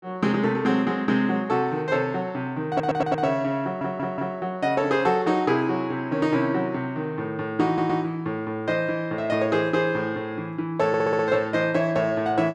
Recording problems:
stutter; 4 times, first at 2.5 s

